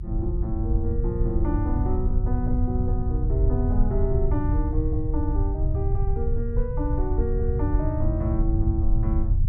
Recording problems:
low-frequency rumble; below 90 Hz, SNR -4 dB

